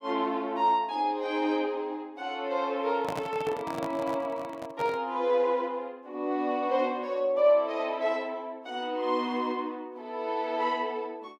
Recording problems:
microphone handling noise; from 3 to 5 s; peak -1 dB vs average level

